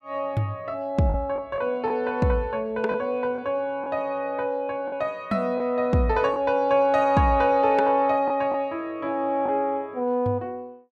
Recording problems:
lost packets; 3% of the sound replaced, filled with the last packet

